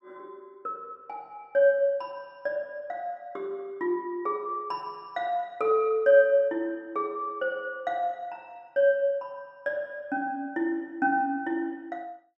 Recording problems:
none

